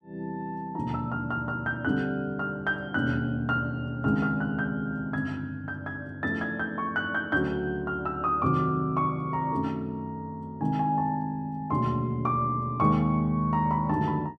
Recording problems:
none

